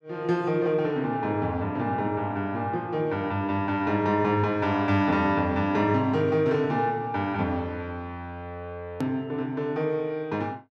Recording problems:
hard cut with a click; at 9 s

